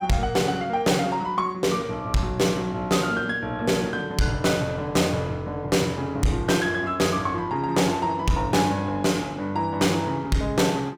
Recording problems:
distortion; soft clipping, signal-to-distortion ratio 12 dB

